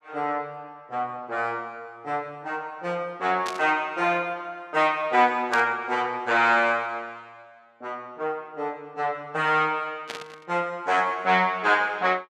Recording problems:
static burst; at 3.5 s, at 5.5 s and at 10 s; peak -4 dB vs average level

